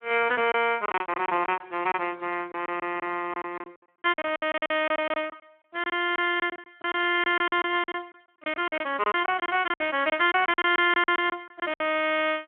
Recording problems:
telephone audio; 190 Hz to 3.3 kHz, Speex
lost packets; 15% of the sound replaced, filled with silence

